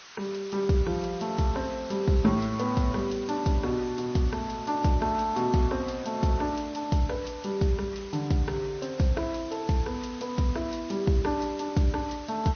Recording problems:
lossy compression; MP2, then MP3, log-spectral distance 6 dB, nothing above 6.3 kHz
hiss; SNR 18 dB

